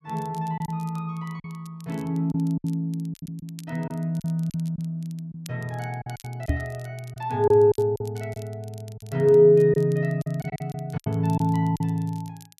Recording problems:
crackling; vinyl, SNR 27 dB
packet loss; 9% of the sound replaced, filled with silence
microphone thump; at 6.5 s; peak +4 dB vs average level

